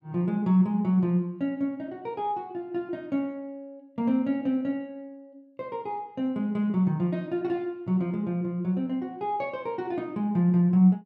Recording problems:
none

